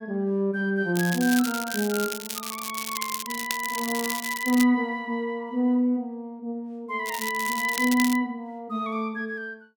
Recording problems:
crackle; from 1 to 4.5 s and from 7 to 8 s; loose cable, SNR 7 dB

